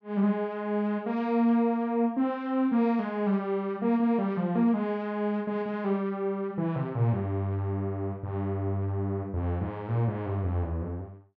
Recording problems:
none

